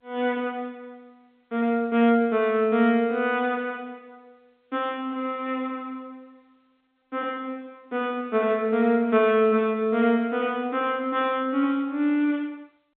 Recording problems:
phone line; 240 Hz to 3.7 kHz, G.711

